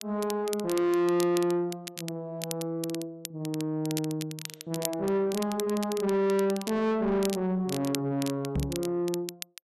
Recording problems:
distortion; soft clipping, signal-to-distortion ratio 7 dB
crackle; vinyl, SNR 11 dB
microphone bump; at 8.5 s; peak +2 dB vs average level

